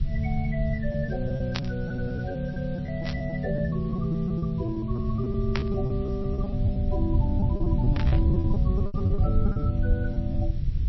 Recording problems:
lossy codec; MP3, log-spectral distance 2 dB, nothing above 5.2 kHz
hiss; SNR 27 dB
rumble; below 110 Hz, SNR -1 dB
lost packets; 15% of the sound replaced, filled with repeated pitch periods
burst of static; 4 times, first at 1.5 s; peak +4 dB vs average level

